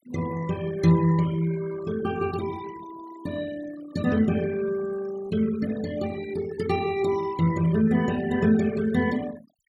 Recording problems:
noise reduction artefacts; signal-to-artefact ratio 18 dB

